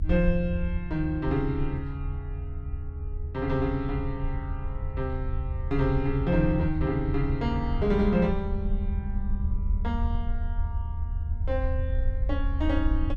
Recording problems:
rumble; below 78 Hz, SNR 2 dB

